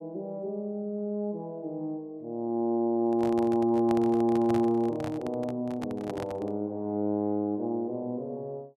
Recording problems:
handling noise; from 3 to 6.5 s; peak -4 dB vs average level

